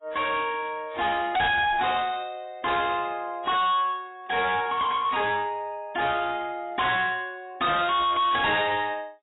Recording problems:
lossy compression; AAC, log-spectral distance 4 dB, nothing above 3.5 kHz
distorted audio; soft clipping, signal-to-distortion ratio 6 dB

